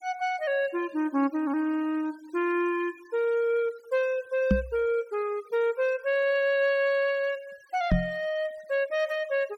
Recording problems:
denoising artefacts; signal-to-artefact ratio 26 dB
microphone thump; at 4.5 s and at 8 s; peak +7 dB vs average level

